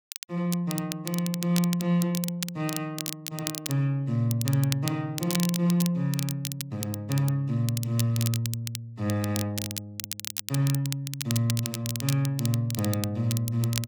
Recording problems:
crackle; vinyl, SNR 7 dB

